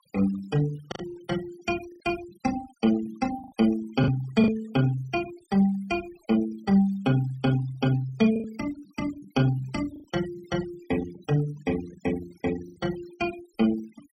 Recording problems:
noise reduction artefacts; signal-to-artefact ratio 19 dB
packet loss; 3% of the sound replaced, filled with the last packet

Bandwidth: 16 kHz